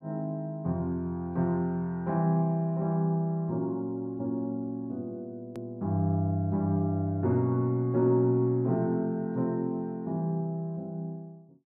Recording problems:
hard cut with a click; at 5.5 s

